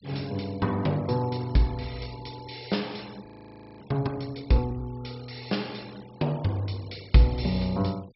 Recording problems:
treble cut off; nothing above 5.5 kHz
denoising artefacts; signal-to-artefact ratio 24 dB
audio freezing; at 3.5 s for 0.5 s

